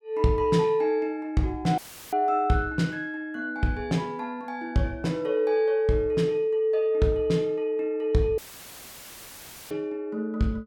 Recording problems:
dropout; at 2 s and at 8.5 s for 1.5 s; filled with static

